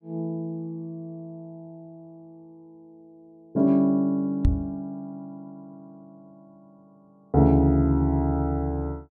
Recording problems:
knock on the microphone; at 4.5 s; peak +6 dB vs average level

